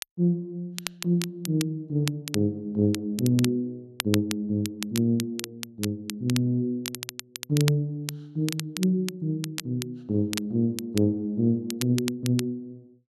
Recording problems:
crackling; vinyl, SNR 9 dB

